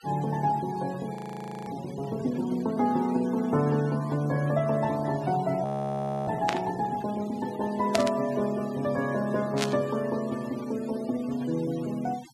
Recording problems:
denoising artefacts; signal-to-artefact ratio 18 dB
audio freezing; at 1 s for 0.5 s and at 5.5 s for 0.5 s
burst of static; at 6.5 s, at 8 s and at 9.5 s; peak +4 dB vs average level

